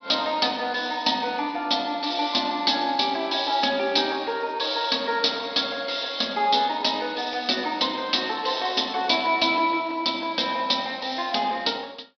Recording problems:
low-pass filter; nothing above 5.5 kHz

